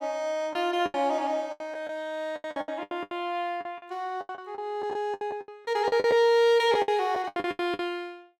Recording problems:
lost packets; 17% of the sound replaced, filled with the last packet

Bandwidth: 16 kHz